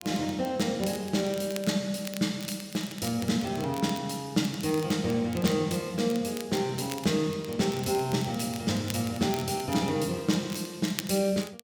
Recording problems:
crackle; vinyl, SNR 15 dB

